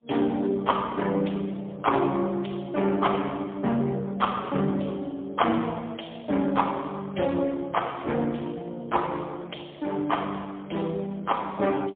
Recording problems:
telephone audio; 150 Hz to 3.4 kHz, AMR-NB, then MP3

